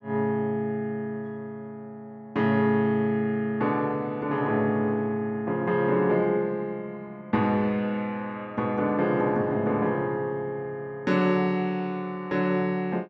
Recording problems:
none

